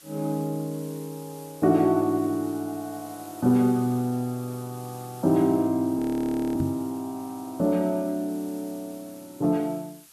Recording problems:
background hiss; slope +1 dB per octave, SNR 21 dB
audio freezing; at 6 s for 0.5 s
knock on the microphone; at 6.5 s; peak +1 dB vs average level

